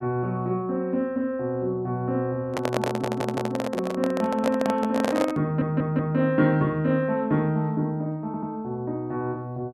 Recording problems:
microphone handling noise; from 2.5 to 5.5 s; peak +4 dB vs average level
stutter; at 3 s, at 5.5 s and at 8.5 s

